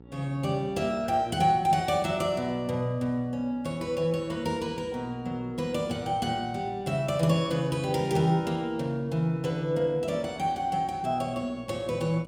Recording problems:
mains hum; 60 Hz, harmonics up to 960 Hz, SNR 22 dB

